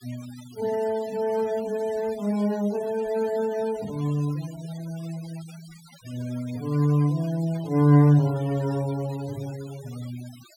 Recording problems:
denoising artefacts; signal-to-artefact ratio 21 dB

